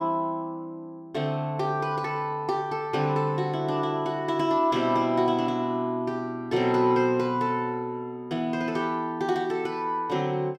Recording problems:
none

